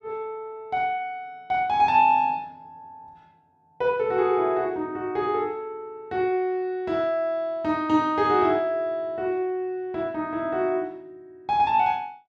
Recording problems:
none

